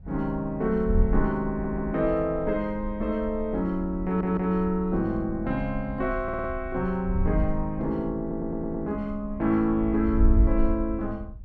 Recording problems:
wind noise; below 62 Hz, SNR 6 dB
stutter; 4 times, first at 1.5 s

